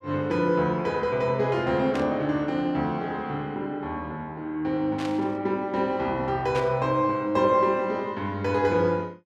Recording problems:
burst of static; at 2 s, at 5 s and at 6.5 s; peak -7 dB vs average level

